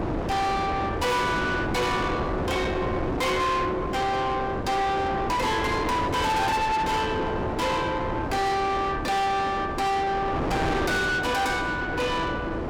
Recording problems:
distortion; soft clipping, signal-to-distortion ratio 7 dB
wind on the microphone; below 910 Hz, SNR 4 dB

